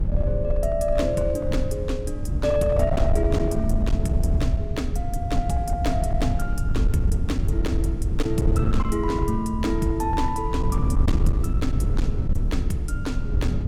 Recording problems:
distorted audio; hard clipping, signal-to-distortion ratio 13 dB
wind on the microphone; below 100 Hz, SNR -1 dB

